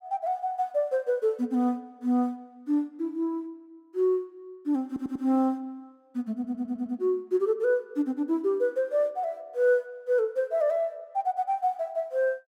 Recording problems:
audio stuttering; at 5 s and at 6.5 s

